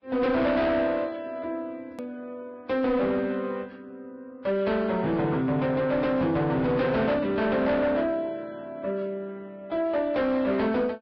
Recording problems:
lossy codec; Vorbis, log-spectral distance 2 dB
distortion; soft clipping, signal-to-distortion ratio 10 dB
edit click; at 2 s

